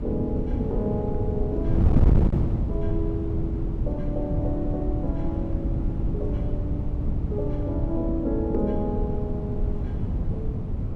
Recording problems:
distorted audio; hard clipping, uneven, signal-to-distortion ratio 10 dB
wind noise; below 160 Hz, SNR -4 dB

